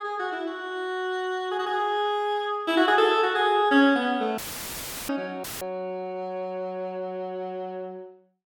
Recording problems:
audio cutting out; at 4.5 s for 0.5 s and at 5.5 s; filled with static

